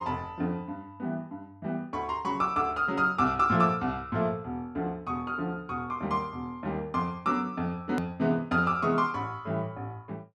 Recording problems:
click at an edit; at 8 s

